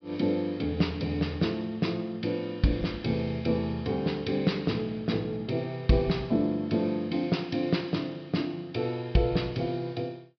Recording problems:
low-pass filter; nothing above 5.5 kHz

